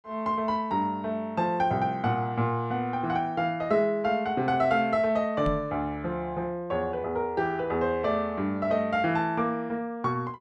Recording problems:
microphone thump; at 5.5 s; peak -1 dB vs average level

